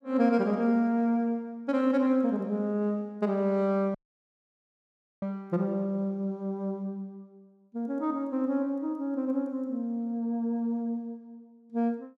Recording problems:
dropout; at 4 s for 1.5 s

